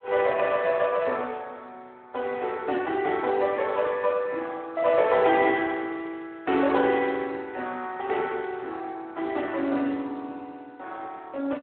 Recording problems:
telephone audio; 190 Hz to 3.4 kHz, Speex

